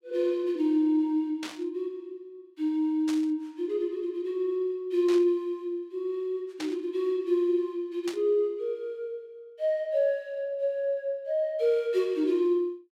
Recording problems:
static burst; 5 times, first at 1.5 s; peak -6 dB vs average level

